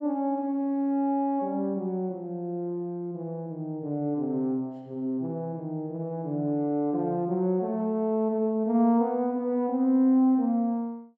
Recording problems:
none

